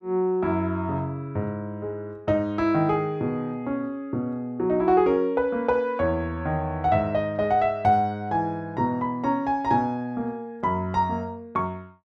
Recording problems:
none

